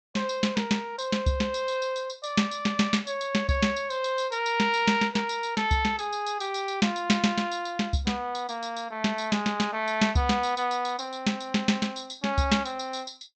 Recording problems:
treble missing; nothing above 8 kHz

